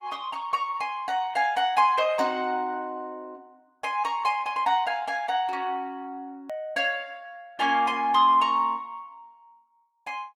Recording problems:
codec artefacts; Opus, log-spectral distance 2 dB, nothing above 18.9 kHz
edit click; at 6.5 s

